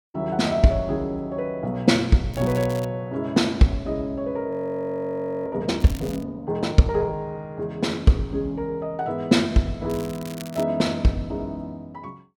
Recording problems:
crackling; at 2.5 s, at 6 s and at 10 s; loose cable, SNR 19 dB
frozen audio; at 4.5 s for 1 s

